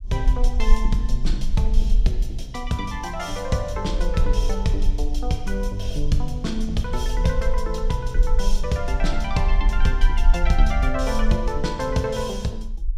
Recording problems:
rumble; below 42 Hz, strongest tone 22 Hz, SNR -1 dB

